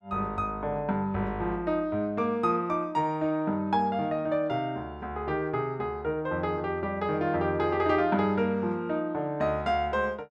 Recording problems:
none

